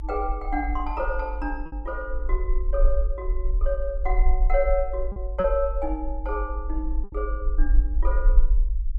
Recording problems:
rumble; below 48 Hz, SNR -2 dB
lost packets; 3% of the sound replaced, filled with repeated pitch periods

